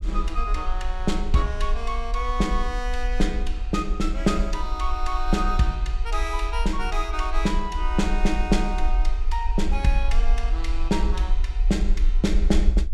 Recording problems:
rumble; below 46 Hz, strongest tone 20 Hz, SNR 0 dB

